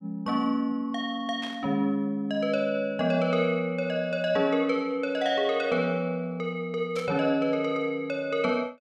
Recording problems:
burst of static; at 1.5 s and at 7 s; peak -10 dB vs average level

